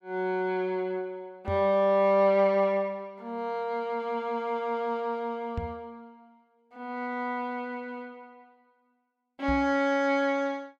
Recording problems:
microphone thump; at 1.5 s, at 5.5 s and at 9.5 s; peak -2 dB vs average level

